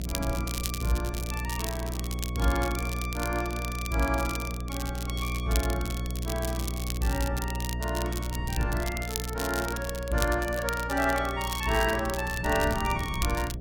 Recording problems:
hum; 60 Hz, harmonics up to 660 Hz, SNR 4 dB
wind on the microphone; below 170 Hz, SNR 13 dB
crackling; vinyl, SNR 7 dB

